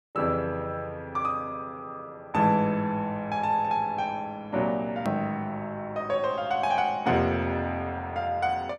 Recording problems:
click at an edit; at 5 s

